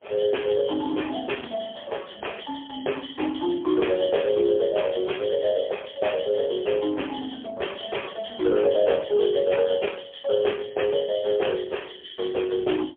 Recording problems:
telephone audio; 280 Hz to 3.4 kHz, AMR-NB, then MP3

